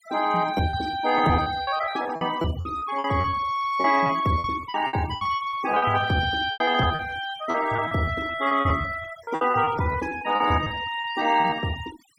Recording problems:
noise reduction artefacts; signal-to-artefact ratio 16 dB
lost packets; 17% of the sound replaced, filled with repeated pitch periods

